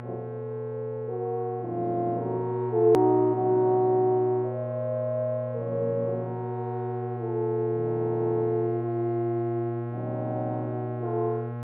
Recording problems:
hum; 60 Hz, harmonics up to 1.3 kHz, SNR 8 dB
edit click; at 3 s

